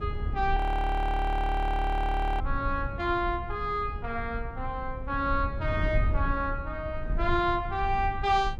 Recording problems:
low-frequency rumble; below 78 Hz, SNR 4 dB
audio freezing; at 0.5 s for 2 s

